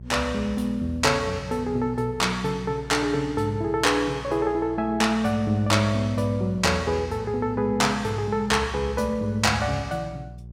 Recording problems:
hum; 60 Hz, harmonics up to 420 Hz, SNR 16 dB

